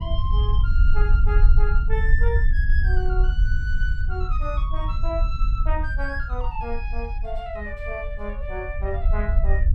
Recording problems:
low-frequency rumble; below 54 Hz, strongest tone 20 Hz, SNR -8 dB

